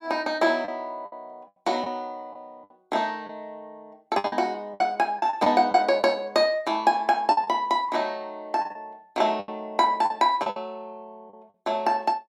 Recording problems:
packet loss; 8% of the sound replaced, filled with the last packet

